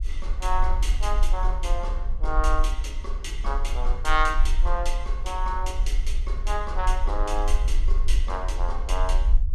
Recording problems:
low-frequency rumble; below 44 Hz, strongest tone 18 Hz, SNR -3 dB

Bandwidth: 14 kHz